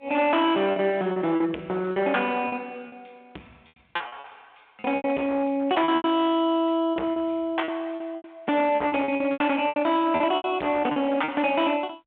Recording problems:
phone line; 300 Hz to 3.5 kHz, G.726
distorted audio; hard clipping, signal-to-distortion ratio 11 dB
packet loss; 13% of the sound replaced, filled with repeated pitch periods

